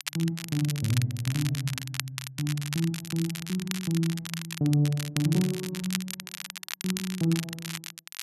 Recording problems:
crackle; vinyl, SNR 7 dB

